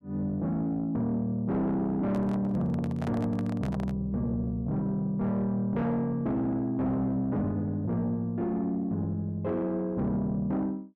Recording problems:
distortion; soft clipping, signal-to-distortion ratio 11 dB
microphone handling noise; from 2 to 4 s; peak -6 dB vs average level

